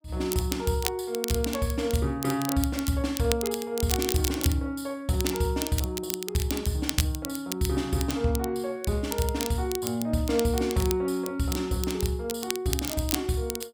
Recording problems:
crackle; vinyl, SNR 7 dB

